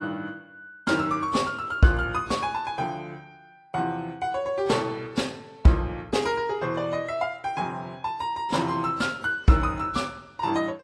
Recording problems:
lossy compression; AAC, log-spectral distance 2 dB

